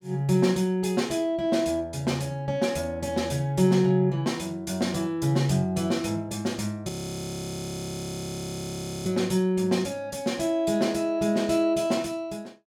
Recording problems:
audio freezing; at 7 s for 2 s

